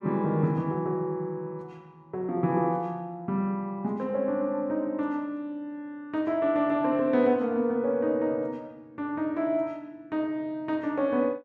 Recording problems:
none

